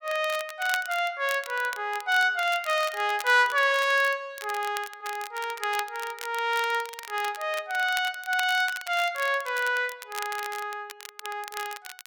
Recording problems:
crackling; vinyl, SNR 14 dB

